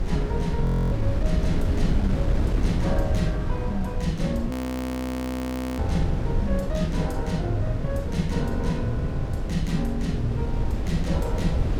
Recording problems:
rumble; below 74 Hz, SNR 10 dB
wind on the microphone; below 140 Hz, SNR 0 dB
audio freezing; at 0.5 s and at 4.5 s for 1.5 s

